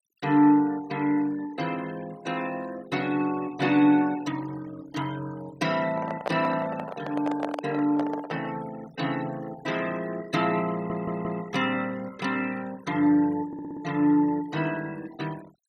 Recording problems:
noise reduction artefacts; signal-to-artefact ratio 19 dB
handling noise; from 6 to 8.5 s; peak +1 dB vs average level
audio stuttering; at 11 s and at 13 s

